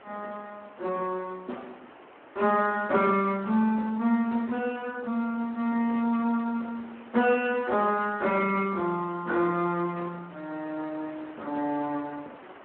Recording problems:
phone line; 190 Hz to 3.5 kHz, Speex
background hiss; SNR 21 dB

